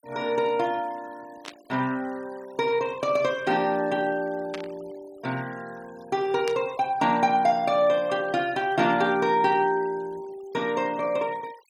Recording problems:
noise reduction artefacts; signal-to-artefact ratio 25 dB
burst of static; at 1.5 s, at 4.5 s and at 6.5 s; peak -6 dB vs average level

